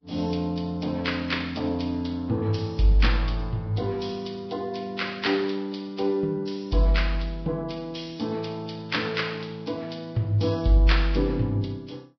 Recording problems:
codec artefacts; Vorbis, log-spectral distance 5 dB, nothing above 5.3 kHz

